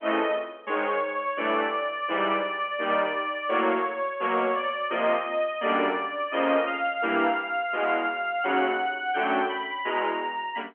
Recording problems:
telephone audio; 260 Hz to 3.3 kHz, G.711

